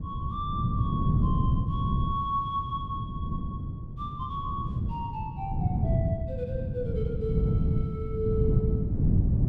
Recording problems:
wind noise; below 170 Hz, SNR -5 dB

